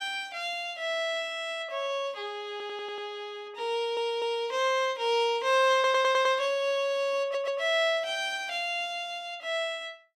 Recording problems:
audio stuttering; 4 times, first at 2.5 s

